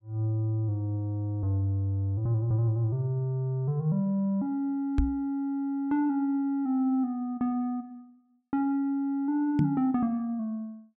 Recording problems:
knock on the microphone; at 5 s and at 9.5 s; peak +6 dB vs average level

